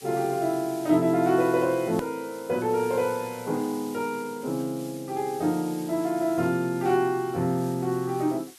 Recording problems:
hiss; slope +3 dB per octave, SNR 19 dB
hard cut with a click; at 2 s

